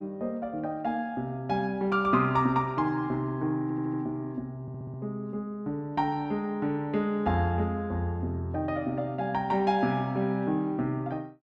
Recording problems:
audio stuttering; at 3.5 s and at 4.5 s

